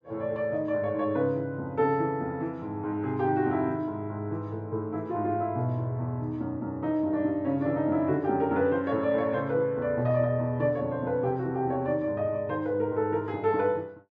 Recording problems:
none

